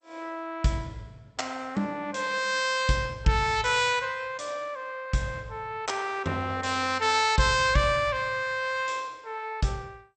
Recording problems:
codec artefacts; MP2, log-spectral distance 4 dB, nothing above 8.2 kHz

